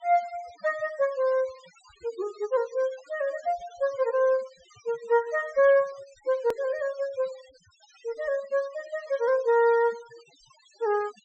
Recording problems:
low-pass filter; nothing above 8 kHz
denoising artefacts; signal-to-artefact ratio 23 dB
edit click; at 6.5 s

